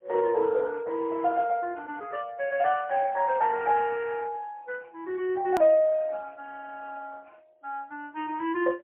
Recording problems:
phone line; 300 Hz to 3.3 kHz, AMR-NB, then MP3
click at an edit; at 5.5 s

